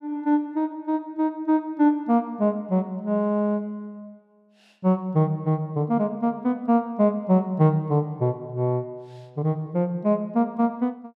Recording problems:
none

